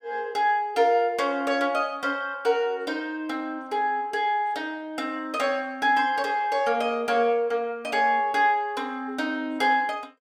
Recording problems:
none

